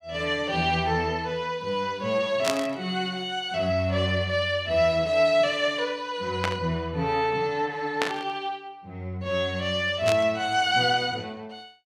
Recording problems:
static burst; 4 times, first at 2.5 s; peak +3 dB vs average level

